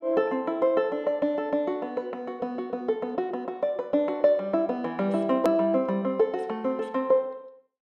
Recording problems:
edit click; at 5.5 s

